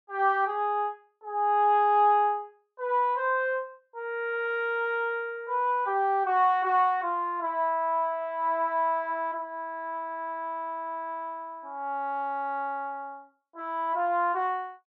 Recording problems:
none

